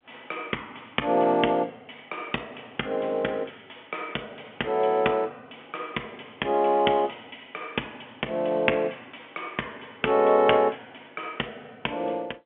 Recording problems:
telephone audio; 300 Hz to 3.4 kHz, G.711

